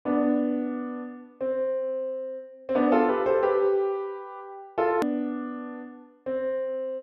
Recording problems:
hard cut with a click; at 5 s

